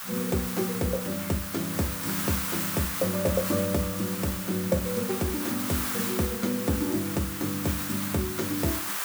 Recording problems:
background hiss; SNR 2 dB

